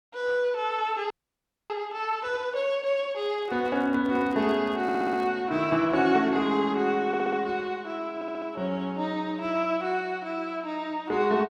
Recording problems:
audio freezing; at 1 s for 0.5 s
microphone handling noise; from 3 to 5.5 s; peak -13 dB vs average level
audio stuttering; at 5 s, at 7 s and at 8 s

